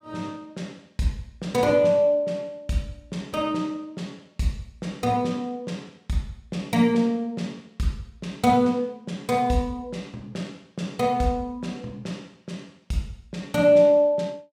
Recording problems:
none

